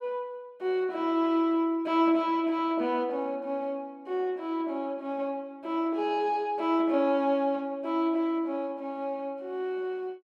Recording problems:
none

